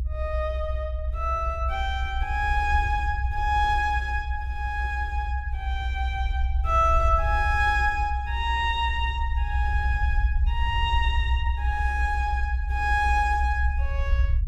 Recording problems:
low-frequency rumble; below 66 Hz, strongest tone 64 Hz, SNR 1 dB

